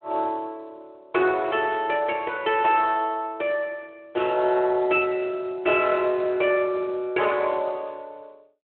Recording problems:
phone line; 280 Hz to 3.2 kHz, Speex

